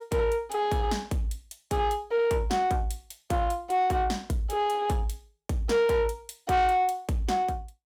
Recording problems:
distortion; soft clipping, signal-to-distortion ratio 12 dB

